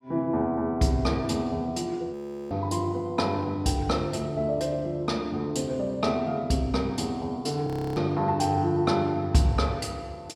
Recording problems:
audio freezing; at 2 s and at 7.5 s

